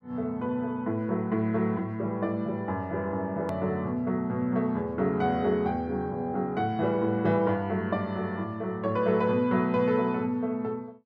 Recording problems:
click at an edit; at 3.5 s

